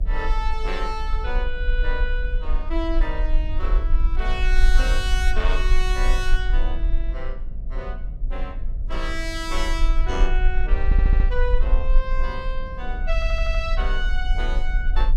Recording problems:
hum; 60 Hz, harmonics up to 720 Hz, SNR 19 dB
rumble; below 42 Hz, strongest tone 22 Hz, SNR -5 dB
wind noise; below 140 Hz, SNR 11 dB
stutter; at 11 s and at 13 s

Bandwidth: 16 kHz